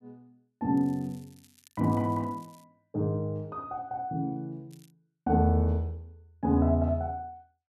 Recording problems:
crackling; from 1 to 2.5 s and at 4.5 s; loose cable, SNR 30 dB

